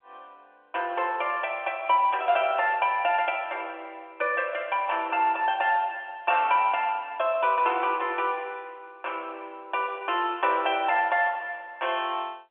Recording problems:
phone line; 300 Hz to 3.4 kHz, G.711

